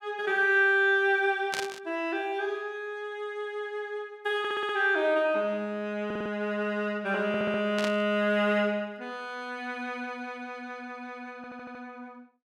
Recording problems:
burst of static; at 1.5 s and at 8 s; peak 0 dB vs average level
audio stuttering; 4 times, first at 4.5 s

